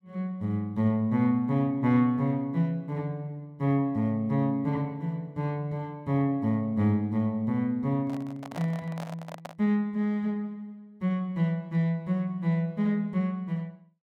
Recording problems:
handling noise; from 8 to 9.5 s; peak -6 dB vs average level

